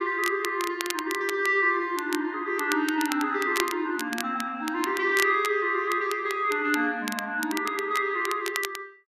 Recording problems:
crackle; vinyl, SNR 11 dB

